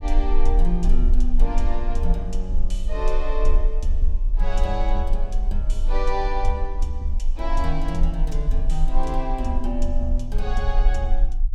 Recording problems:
low-frequency rumble; below 34 Hz, strongest tone 20 Hz, SNR -3 dB

